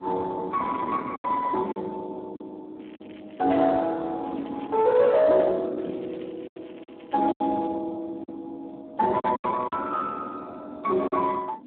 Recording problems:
telephone audio; 240 Hz to 2 kHz, Speex
distorted audio; soft clipping, signal-to-distortion ratio 11 dB
wind on the microphone; below 970 Hz, SNR 16 dB
packet loss; 6% of the sound replaced, filled with silence
crackle; at 3 s, from 4 to 5.5 s and from 6 to 7.5 s; loose cable, SNR 27 dB

